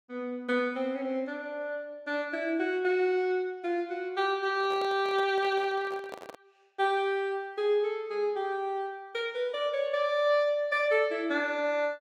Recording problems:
handling noise; from 4.5 to 6.5 s; peak -8 dB vs average level

